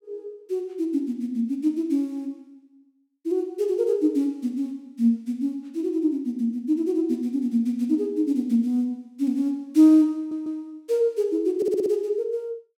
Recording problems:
audio stuttering; at 10 s and at 12 s

